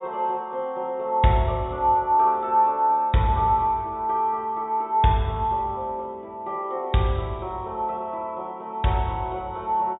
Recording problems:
treble missing; nothing above 4 kHz

